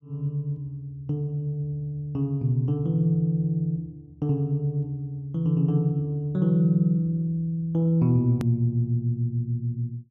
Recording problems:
hard cut with a click; at 8.5 s

